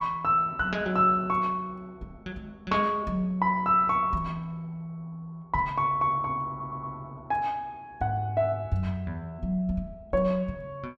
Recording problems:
stutter; at 6.5 s

